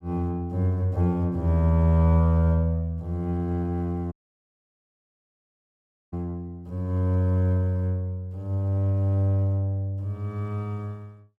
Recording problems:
dropout; at 4 s for 2 s

